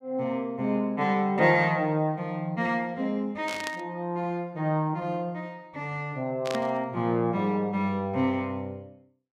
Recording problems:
burst of static; at 3.5 s and at 6.5 s; peak -3 dB vs average level

